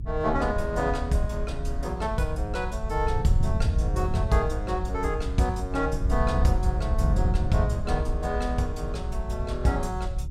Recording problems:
rumble; below 64 Hz, SNR 6 dB
wind noise; below 100 Hz, SNR 2 dB

